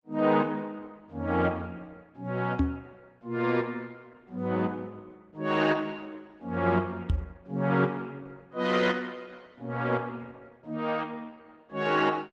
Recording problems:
lossy compression; Opus, log-spectral distance 3 dB
knock on the microphone; at 2.5 s and at 7 s; peak +7 dB vs average level

